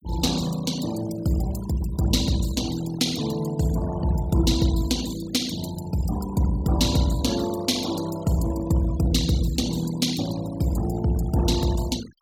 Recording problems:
denoising artefacts; signal-to-artefact ratio 14 dB

